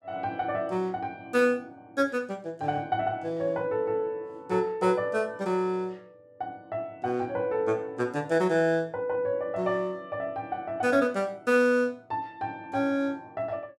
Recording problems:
none

